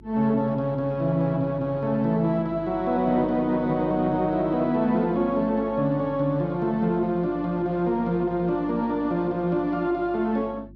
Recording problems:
electrical hum; 50 Hz, harmonics up to 350 Hz, SNR 22 dB

